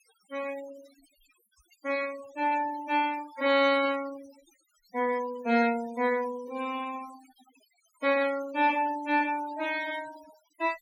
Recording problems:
noise reduction artefacts; signal-to-artefact ratio 18 dB

